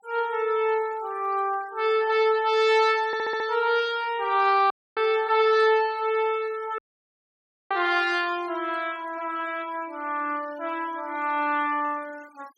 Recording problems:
noise reduction artefacts; signal-to-artefact ratio 23 dB
stutter; at 3 s
audio cutting out; at 4.5 s and at 7 s for 1 s

